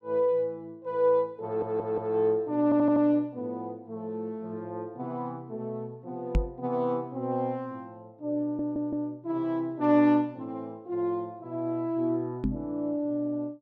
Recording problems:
stutter; at 1.5 s, at 2.5 s and at 8.5 s
microphone bump; at 6.5 s and at 12 s; peak +6 dB vs average level

